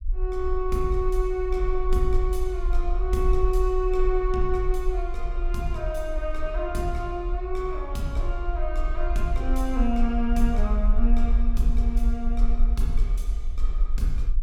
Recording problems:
low-frequency rumble; below 44 Hz, SNR -1 dB

